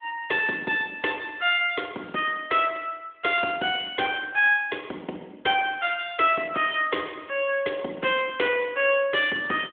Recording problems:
phone line; 260 Hz to 3.5 kHz, AMR-NB

